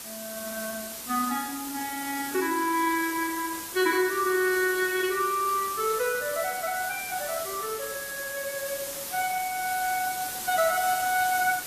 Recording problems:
codec artefacts; AAC, log-spectral distance 13 dB
hiss; slope -1 dB per octave, SNR 6 dB

